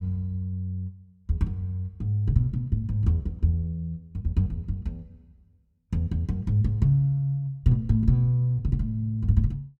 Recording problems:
none

